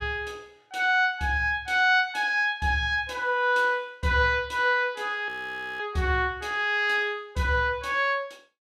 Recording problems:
frozen audio; at 5.5 s for 0.5 s

